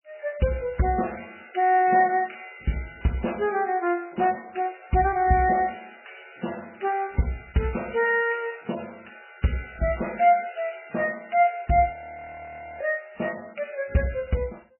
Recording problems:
codec artefacts; MP3, log-spectral distance 6 dB, nothing above 2.9 kHz
audio freezing; at 12 s for 1 s

